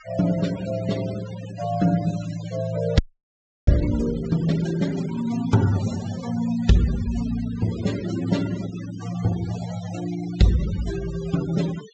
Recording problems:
low-pass filter; nothing above 8 kHz
denoising artefacts; signal-to-artefact ratio 15 dB
audio freezing; at 3 s for 0.5 s

